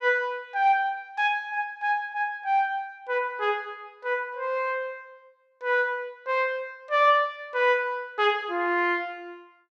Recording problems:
none

